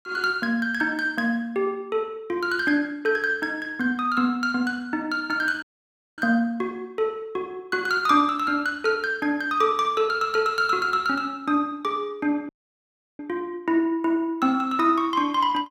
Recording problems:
audio cutting out; at 5.5 s for 0.5 s and at 12 s for 0.5 s

